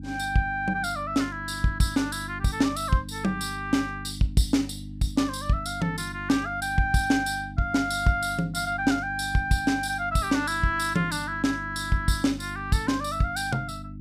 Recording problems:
electrical hum; 50 Hz, harmonics up to 300 Hz, SNR 13 dB

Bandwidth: 15.5 kHz